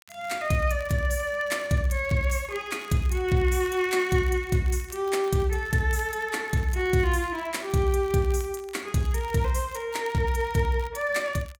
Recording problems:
crackling; vinyl, SNR 24 dB

